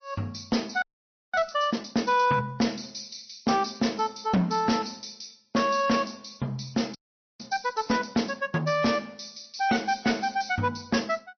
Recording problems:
low-pass filter; nothing above 6 kHz
codec artefacts; MP3, log-spectral distance 9 dB
distorted audio; soft clipping, signal-to-distortion ratio 12 dB
frozen audio; at 1 s for 0.5 s and at 7 s

